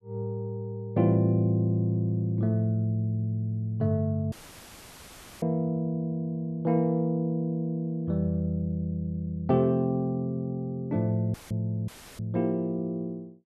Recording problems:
audio cutting out; at 4.5 s for 1 s, at 11 s and at 12 s; filled with static

